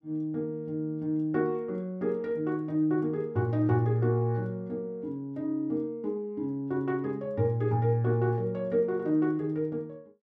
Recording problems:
none

